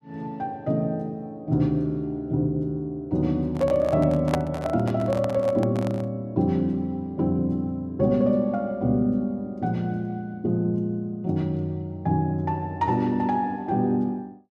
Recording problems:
microphone handling noise; from 3.5 to 6 s; peak +3 dB vs average level

